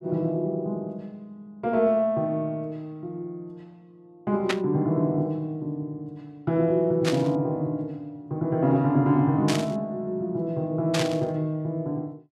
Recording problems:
burst of static; 4 times, first at 4.5 s; peak +3 dB vs average level

